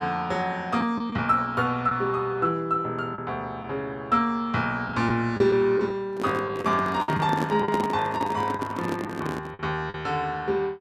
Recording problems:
packet loss; 5% of the sound replaced, filled with the last packet
microphone handling noise; from 6 to 9.5 s; peak +1 dB vs average level

